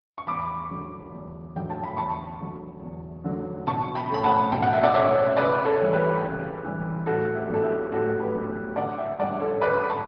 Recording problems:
treble missing; nothing above 5 kHz
lossy codec; Opus, log-spectral distance 3 dB

